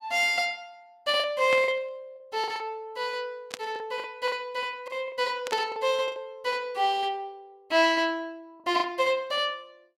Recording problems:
packet loss; 7% of the sound replaced, filled with the last packet
static burst; at 1.5 s, at 3.5 s and at 5.5 s; peak -2 dB vs average level

